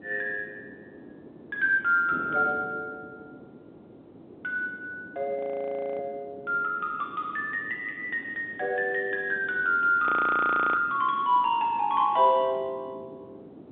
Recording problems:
phone line; 240 Hz to 3.7 kHz, G.711
wind on the microphone; below 750 Hz, SNR 18 dB
frozen audio; at 5.5 s for 0.5 s and at 10 s for 0.5 s

